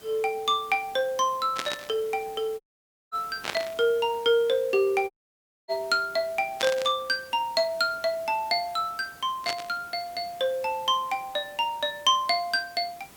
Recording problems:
background hiss; slope -3 dB per octave, SNR 22 dB
burst of static; 4 times, first at 1.5 s; peak +2 dB vs average level
dropout; at 2.5 s for 0.5 s and at 5 s for 0.5 s

